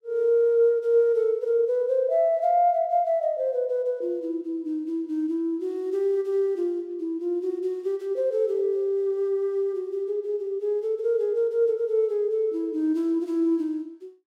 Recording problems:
none

